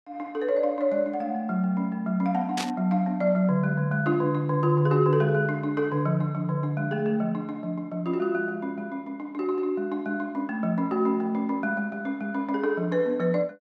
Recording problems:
burst of static; at 2.5 s; peak -1 dB vs average level

